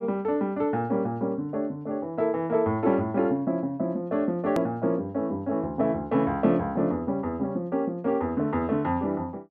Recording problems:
click at an edit; at 4.5 s

